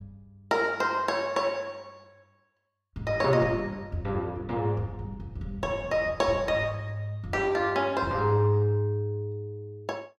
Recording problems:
none

